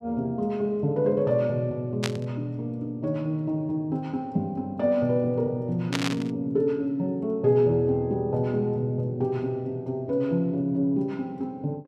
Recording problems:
burst of static; at 2 s and at 6 s; peak +3 dB vs average level

